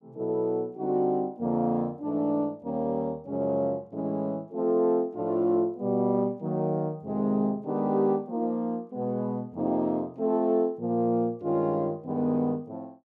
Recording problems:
none

